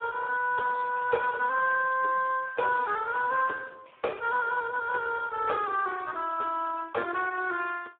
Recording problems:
phone line; 300 Hz to 2.3 kHz, Speex

